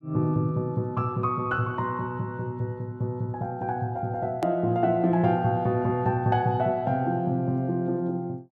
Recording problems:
hard cut with a click; at 4.5 s

